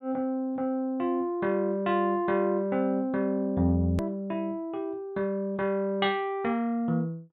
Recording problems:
treble missing; nothing above 4 kHz
click at an edit; at 4 s

